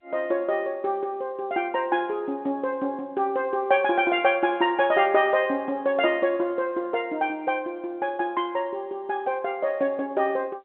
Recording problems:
telephone audio; 220 Hz to 3.7 kHz, G.711

